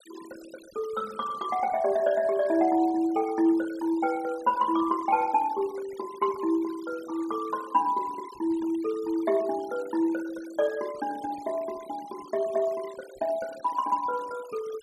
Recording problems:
noise reduction artefacts; signal-to-artefact ratio 21 dB

